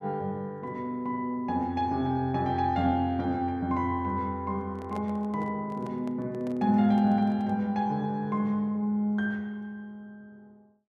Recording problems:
handling noise; from 4.5 to 7.5 s; peak -10 dB vs average level

